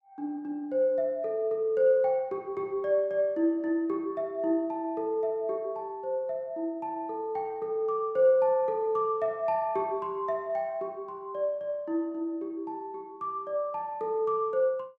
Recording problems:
none

